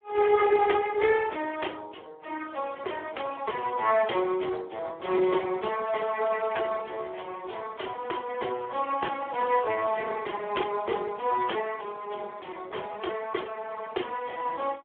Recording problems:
telephone audio; 320 Hz to 3.4 kHz, Speex

